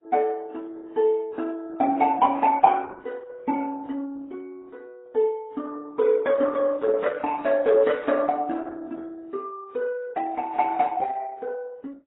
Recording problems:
lossy compression; Opus, then AAC, log-spectral distance 3 dB, nothing above 3.5 kHz

